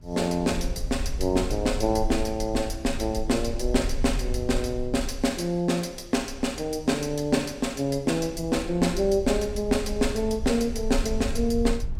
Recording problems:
rumble; below 60 Hz, SNR 9 dB

